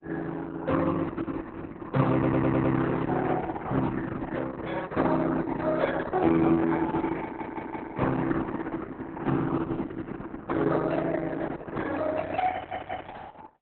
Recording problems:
codec artefacts; Opus, then Opus, log-spectral distance 4 dB, nothing above 4 kHz
audio stuttering; at 2 s, at 7 s and at 13 s

